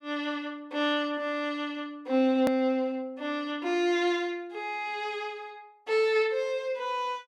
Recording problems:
edit click; at 2.5 s

